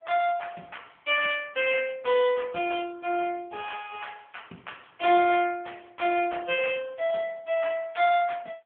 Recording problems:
phone line; 220 Hz to 3.3 kHz, AMR-NB

